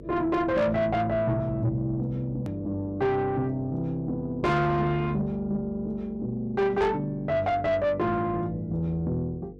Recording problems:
distorted audio; soft clipping, signal-to-distortion ratio 10 dB
electrical hum; 50 Hz, harmonics up to 500 Hz, SNR 18 dB
edit click; at 2.5 s

